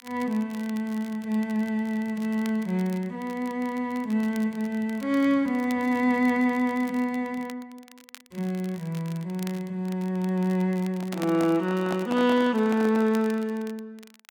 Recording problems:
crackling; vinyl, SNR 23 dB
microphone handling noise; from 11 to 13 s; peak -3 dB vs average level

